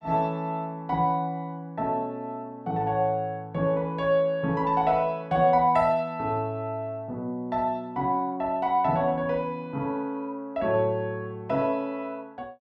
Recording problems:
none

